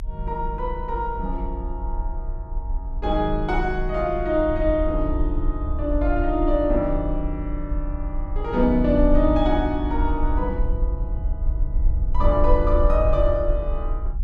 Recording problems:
rumble; below 52 Hz, SNR 3 dB

